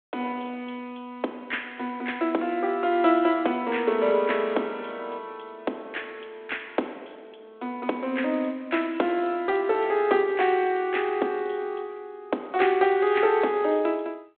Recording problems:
phone line; 220 Hz to 3.6 kHz, G.726

